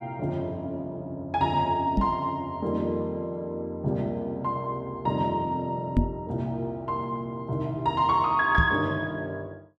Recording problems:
microphone thump; at 2 s, at 6 s and at 8.5 s; peak +8 dB vs average level

